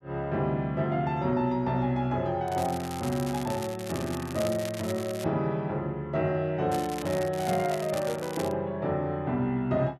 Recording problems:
crackle; from 2.5 to 5.5 s and from 6.5 to 8.5 s; loose cable, SNR 13 dB

